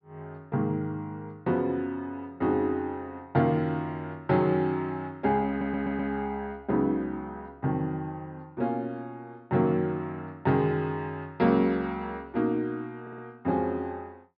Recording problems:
low-pass filter; nothing above 5.5 kHz
audio stuttering; at 5.5 s and at 13 s

